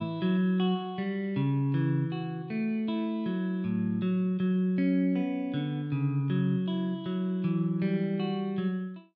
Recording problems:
none

